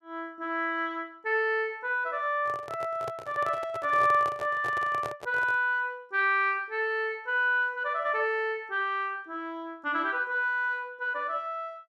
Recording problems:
handling noise; from 2.5 to 5.5 s; peak -5 dB vs average level

